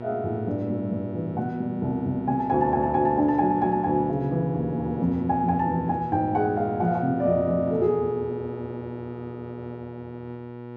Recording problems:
hum; 60 Hz, harmonics up to 1.4 kHz, SNR 12 dB

